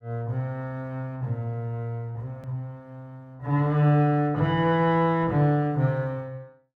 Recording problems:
click at an edit; at 2.5 s

